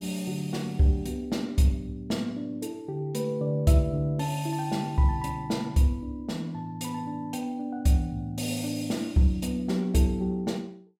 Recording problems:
none

